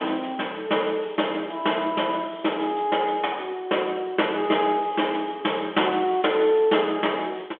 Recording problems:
telephone audio; 240 Hz to 3.5 kHz, G.726

